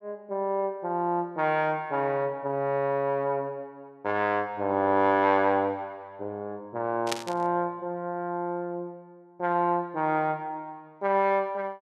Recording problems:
static burst; at 7 s; peak +2 dB vs average level

